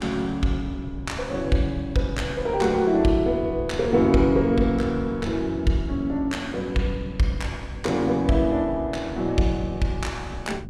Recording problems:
wind noise; below 180 Hz, SNR 14 dB

